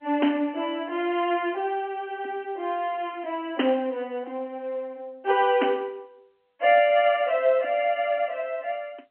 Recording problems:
telephone audio; 220 Hz to 3.2 kHz, G.711

